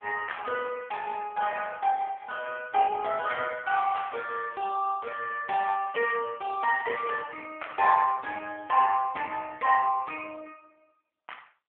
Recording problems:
telephone audio; 320 Hz to 2.9 kHz, AMR-NB

